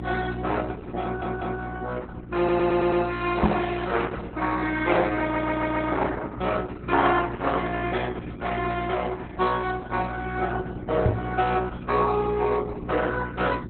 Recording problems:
codec artefacts; Opus, then Opus, log-spectral distance 5 dB, nothing above 3.9 kHz
hum; 60 Hz, harmonics up to 360 Hz, SNR 11 dB
audio stuttering; at 1 s, at 2.5 s and at 5 s
microphone thump; at 3.5 s and at 11 s; peak +6 dB vs average level

